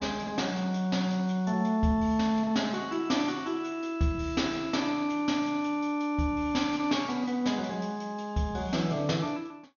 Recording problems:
treble missing; nothing above 6.7 kHz

